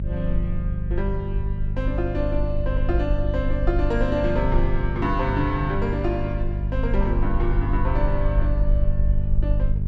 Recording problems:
electrical hum; 50 Hz, harmonics up to 400 Hz, SNR 1 dB
rumble; below 52 Hz, SNR 1 dB

